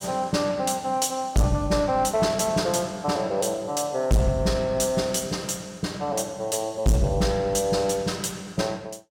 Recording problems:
distorted audio; hard clipping, signal-to-distortion ratio 6 dB

